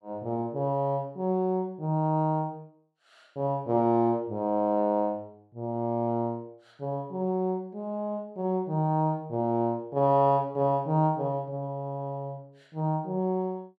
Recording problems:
none

